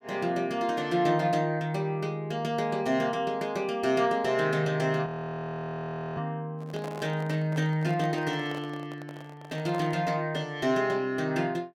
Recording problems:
audio freezing; at 5 s for 1 s
microphone handling noise; from 6.5 to 10 s; peak -7 dB vs average level

